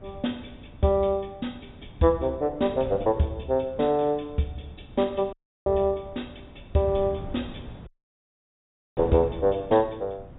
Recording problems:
low-pass filter; nothing above 4 kHz
wind noise; below 240 Hz, SNR 17 dB
dropout; at 5.5 s and at 8 s for 1 s

